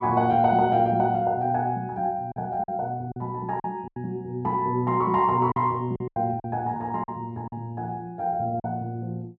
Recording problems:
packet loss; 6% of the sound replaced, filled with silence

